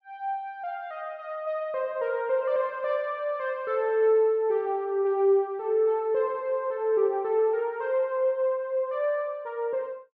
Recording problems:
none

